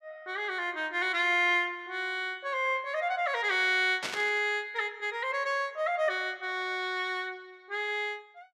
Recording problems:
static burst; at 4 s; peak 0 dB vs average level

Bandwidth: 14.5 kHz